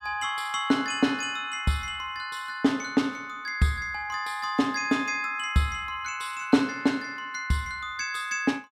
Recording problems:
none

